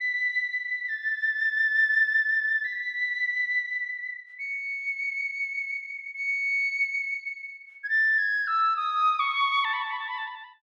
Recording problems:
none

